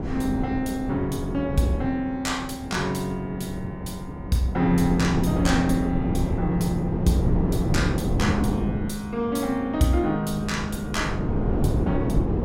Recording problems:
wind noise; below 310 Hz, SNR 2 dB

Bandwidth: 16 kHz